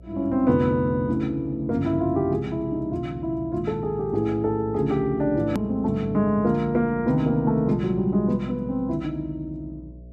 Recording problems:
hum; 60 Hz, harmonics up to 660 Hz, SNR 20 dB
click at an edit; at 5.5 s

